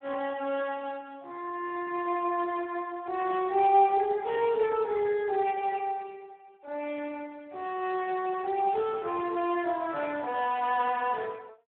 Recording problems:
telephone audio; 300 Hz to 3.3 kHz, Speex

